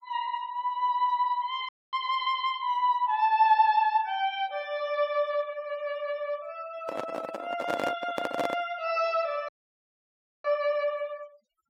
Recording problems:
denoising artefacts; signal-to-artefact ratio 23 dB
audio cutting out; at 1.5 s and at 9.5 s for 1 s
handling noise; from 7 to 8.5 s; peak +2 dB vs average level

